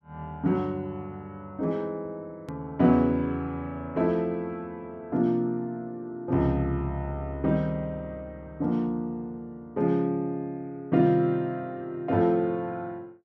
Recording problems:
hard cut with a click; at 2.5 s

